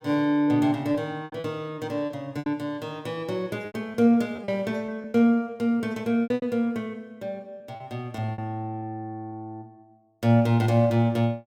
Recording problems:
packet loss; 8% of the sound replaced, filled with repeated pitch periods

